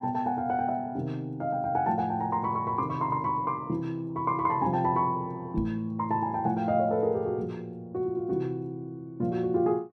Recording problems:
microphone thump; at 5.5 s; peak -2 dB vs average level

